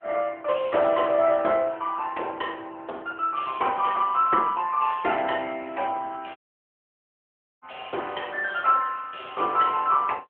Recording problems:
telephone audio; 340 Hz to 3.2 kHz, AMR-NB
dropout; at 6.5 s for 1.5 s

